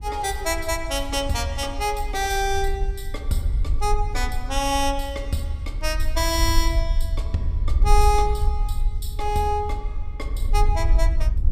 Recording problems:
wind on the microphone; below 56 Hz, SNR 1 dB

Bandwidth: 15.5 kHz